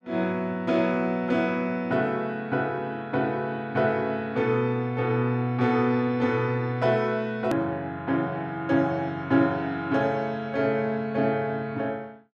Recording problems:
edit click; at 7.5 s

